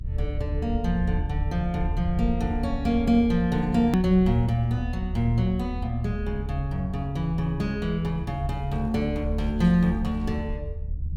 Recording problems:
low-frequency rumble; below 76 Hz, SNR 6 dB
hard cut with a click; at 4 s

